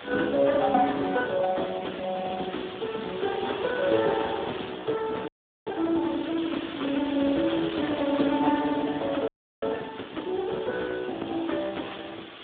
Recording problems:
phone line; 170 Hz to 3.7 kHz, Speex
hiss; SNR 12 dB
frozen audio; at 5.5 s and at 9.5 s

